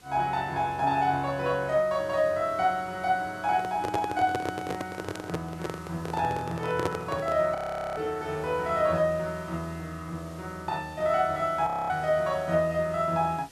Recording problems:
hiss; slope -2 dB per octave, SNR 24 dB
handling noise; from 3.5 to 7.5 s; peak +3 dB vs average level
frozen audio; at 7.5 s and at 12 s

